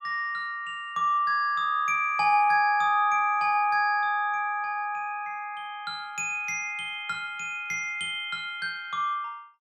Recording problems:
none

